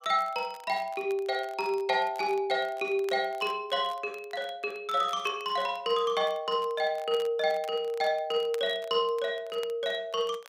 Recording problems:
crackle; vinyl, SNR 24 dB

